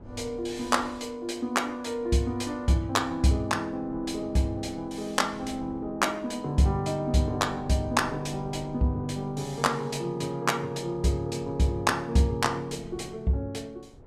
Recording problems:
wind on the microphone; below 400 Hz, SNR 20 dB

